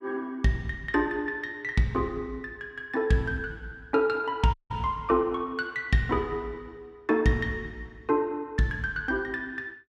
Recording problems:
dropout; at 4.5 s

